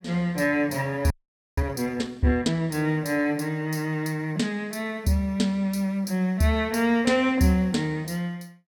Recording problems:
frozen audio; at 1 s

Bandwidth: 17.5 kHz